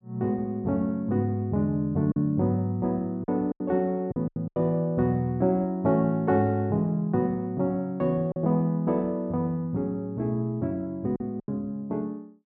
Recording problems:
packet loss; 4% of the sound replaced, filled with silence

